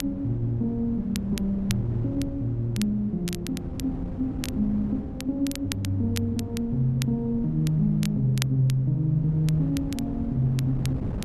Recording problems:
wind noise; below 220 Hz, SNR 10 dB
crackle; vinyl, SNR 14 dB

